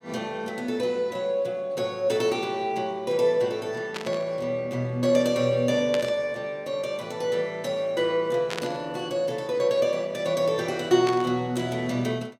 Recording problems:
burst of static; 4 times, first at 4 s; peak -1 dB vs average level

